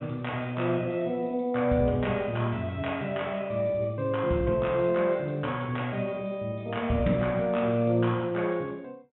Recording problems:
treble cut off; nothing above 3.5 kHz

